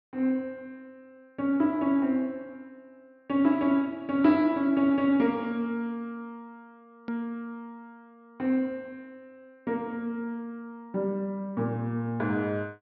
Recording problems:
treble missing; nothing above 5.5 kHz
edit click; at 7 s

